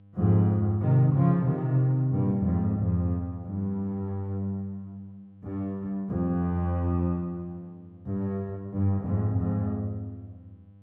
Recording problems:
hum; 50 Hz, harmonics up to 500 Hz, SNR 26 dB

